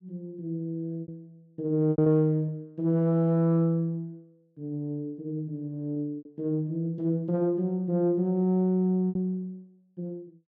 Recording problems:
lost packets; 4% of the sound replaced, filled with repeated pitch periods

